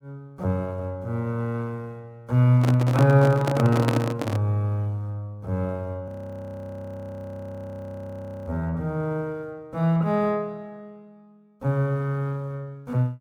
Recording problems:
microphone handling noise; from 2.5 to 4.5 s; peak +2 dB vs average level
frozen audio; at 6 s for 2.5 s

